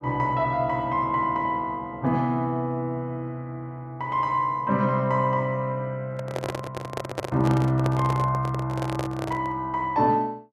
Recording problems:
handling noise; from 6 to 9.5 s; peak 0 dB vs average level

